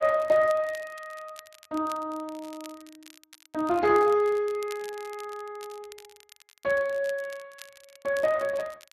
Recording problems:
lossy codec; Speex, log-spectral distance 2 dB
crackling; vinyl, SNR 23 dB

